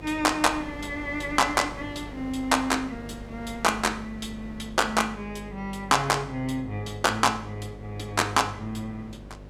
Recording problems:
hum; 50 Hz, harmonics up to 600 Hz, SNR 17 dB
wind on the microphone; below 850 Hz, SNR 20 dB

